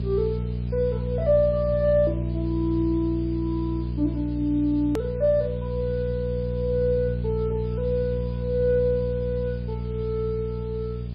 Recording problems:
lossy compression; MP3, log-spectral distance 3 dB, nothing above 13.1 kHz
hum; 60 Hz, harmonics up to 480 Hz, SNR 4 dB
background hiss; SNR 27 dB
hard cut with a click; at 5 s

